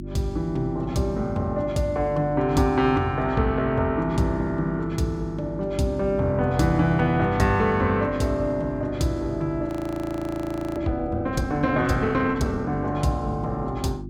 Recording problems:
mains hum; 50 Hz, harmonics up to 350 Hz, SNR 11 dB
audio freezing; at 9.5 s for 1 s

